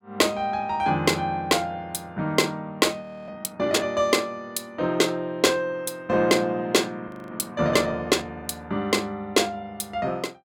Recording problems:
audio freezing; at 3 s and at 7 s

